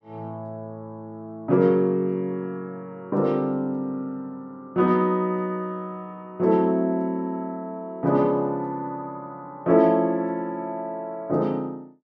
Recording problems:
none

